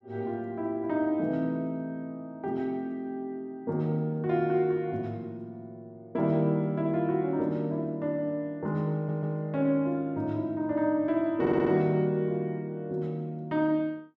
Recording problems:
audio stuttering; at 9 s and at 11 s

